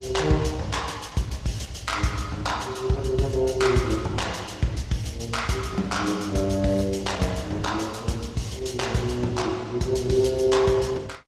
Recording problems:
codec artefacts; Opus, log-spectral distance 4 dB, nothing above 15.5 kHz

